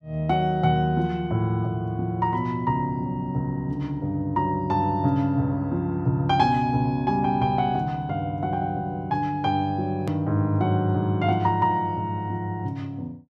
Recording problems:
edit click; at 10 s

